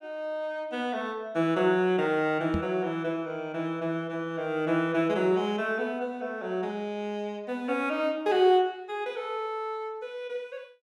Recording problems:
microphone thump; at 2.5 s; peak +1 dB vs average level

